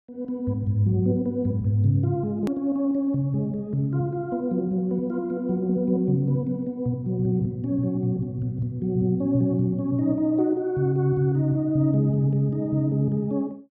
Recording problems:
hard cut with a click; at 2.5 s

